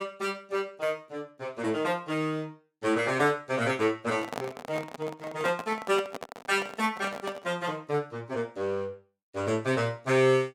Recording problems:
microphone handling noise; from 4 to 7.5 s; peak -1 dB vs average level

